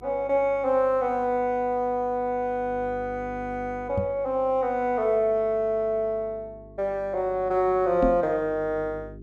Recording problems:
hum; 50 Hz, harmonics up to 400 Hz, SNR 22 dB
microphone bump; at 4 s and at 8 s; peak +2 dB vs average level

